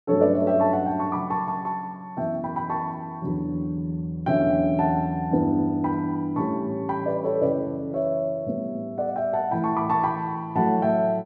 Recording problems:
none

